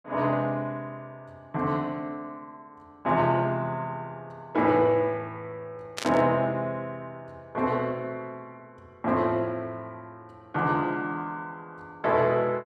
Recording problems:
static burst; at 6 s; peak -1 dB vs average level

